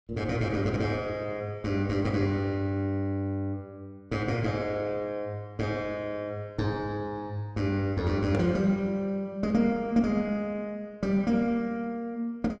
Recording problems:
none

